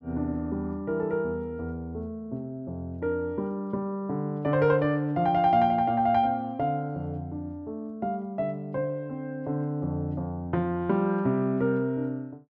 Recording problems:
none

